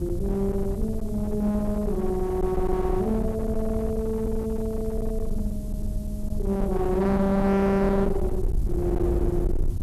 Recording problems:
distorted audio; hard clipping, uneven, signal-to-distortion ratio 7 dB
background hiss; SNR 26 dB
rumble; below 78 Hz, SNR 6 dB
wind noise; below 190 Hz, SNR 12 dB

